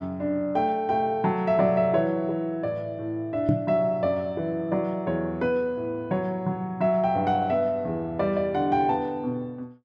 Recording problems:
microphone bump; at 3.5 s; peak +6 dB vs average level

